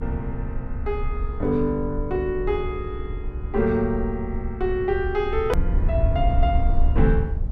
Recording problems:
rumble; below 68 Hz, SNR 2 dB
hard cut with a click; at 5.5 s

